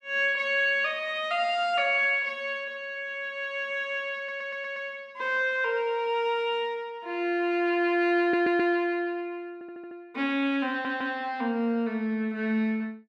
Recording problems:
stutter; 4 times, first at 4 s

